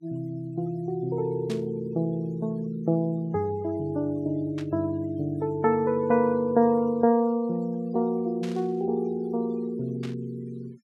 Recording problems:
noise reduction artefacts; signal-to-artefact ratio 27 dB
static burst; 4 times, first at 1.5 s; peak -9 dB vs average level

